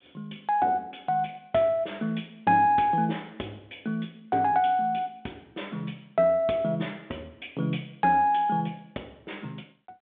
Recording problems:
telephone audio; 240 Hz to 3.6 kHz, G.726

